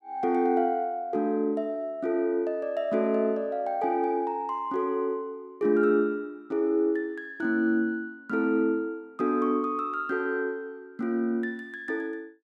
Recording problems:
none

